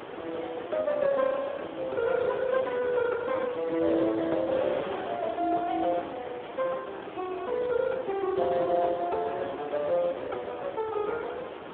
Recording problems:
telephone audio; 280 Hz to 2.2 kHz, Speex
background hiss; SNR 27 dB
wind noise; below 1.2 kHz, SNR 11 dB

